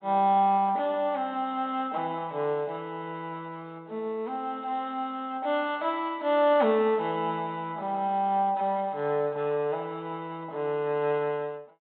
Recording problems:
treble missing; nothing above 4.2 kHz

